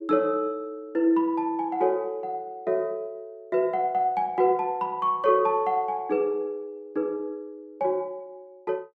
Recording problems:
none

